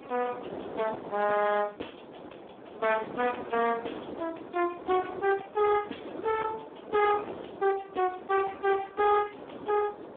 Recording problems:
telephone audio; 280 Hz to 2 kHz, Speex
distortion; hard clipping, uneven, signal-to-distortion ratio 12 dB
wind noise; below 750 Hz, SNR 13 dB

